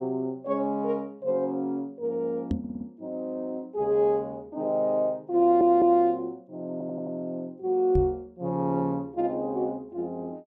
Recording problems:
microphone bump; at 2.5 s and at 8 s; peak +2 dB vs average level
audio stuttering; at 2.5 s, at 5.5 s and at 6.5 s

